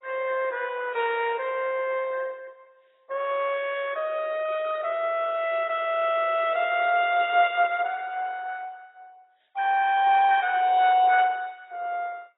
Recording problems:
codec artefacts; MP2, then AAC, log-spectral distance 4 dB, nothing above 3.3 kHz

